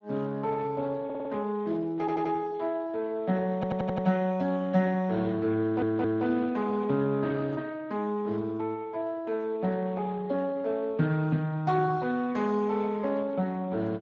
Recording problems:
lossy codec; Speex, log-spectral distance 3 dB
audio stuttering; 4 times, first at 1 s

